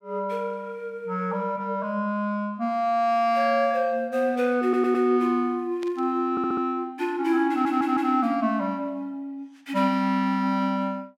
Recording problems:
stutter; at 4.5 s, at 6.5 s and at 7.5 s
burst of static; at 6 s; peak -13 dB vs average level

